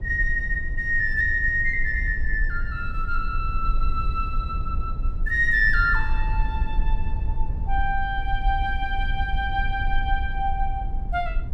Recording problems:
low-frequency rumble; below 52 Hz, strongest tone 18 Hz, SNR 4 dB

